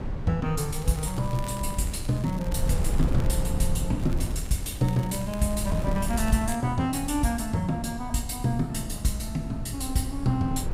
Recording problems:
rumble; below 96 Hz, SNR 5 dB
crackle; from 1 to 3.5 s and from 4 to 6.5 s; loose cable, SNR 19 dB

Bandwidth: 15.5 kHz